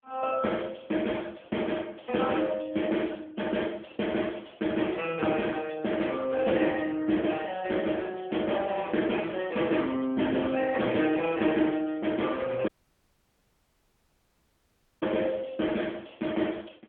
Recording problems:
telephone audio; 220 Hz to 3.3 kHz, AMR-NB
dropout; at 13 s for 2.5 s

